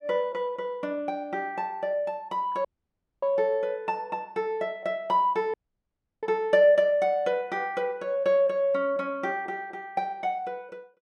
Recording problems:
audio cutting out; at 2.5 s for 0.5 s and at 5.5 s for 0.5 s

